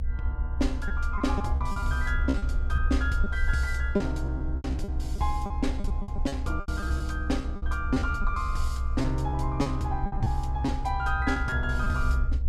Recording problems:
hum; 60 Hz, harmonics up to 840 Hz, SNR 16 dB
rumble; below 66 Hz, SNR 0 dB
lost packets; 11% of the sound replaced, filled with repeated pitch periods

